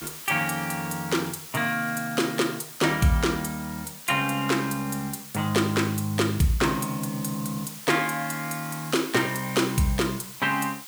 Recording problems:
hiss; slope +2 dB per octave, SNR 13 dB

